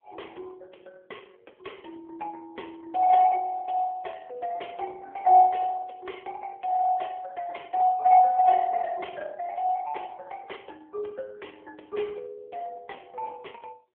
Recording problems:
telephone audio; 320 Hz to 3.4 kHz, AMR-NB

